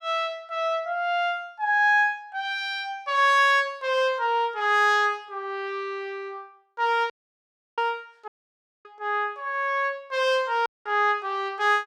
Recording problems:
dropout; at 7 s for 0.5 s, at 8.5 s for 0.5 s and at 11 s

